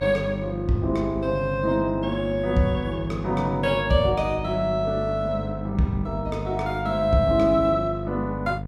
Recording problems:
hum; 50 Hz, harmonics up to 1 kHz, SNR 9 dB

